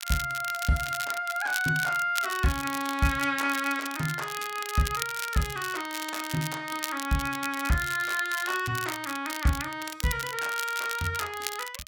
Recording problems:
crackling; vinyl, SNR 8 dB

